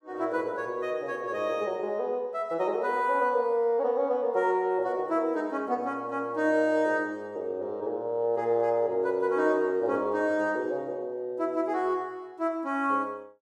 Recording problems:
none

